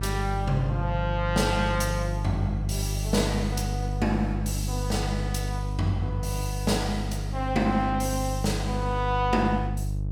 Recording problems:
electrical hum; 50 Hz, harmonics up to 450 Hz, SNR 2 dB

